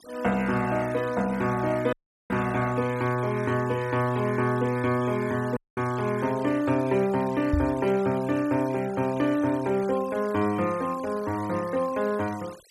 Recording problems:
denoising artefacts; signal-to-artefact ratio 19 dB
dropout; at 2 s and at 5.5 s
microphone bump; at 7.5 s; peak +3 dB vs average level

